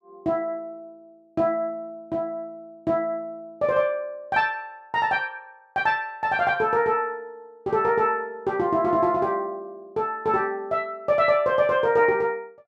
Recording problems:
none

